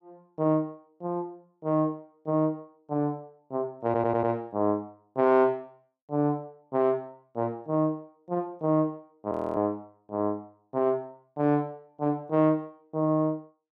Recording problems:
audio stuttering; at 4 s
audio freezing; at 9.5 s

